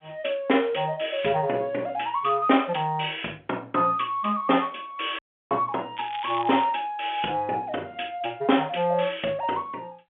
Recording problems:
telephone audio; 220 Hz to 3.5 kHz, G.711
dropout; at 5 s
crackle; at 6 s; loose cable, SNR 14 dB

